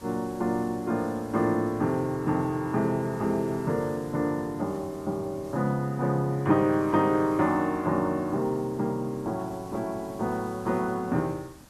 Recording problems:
hiss; slope -3 dB per octave, SNR 22 dB

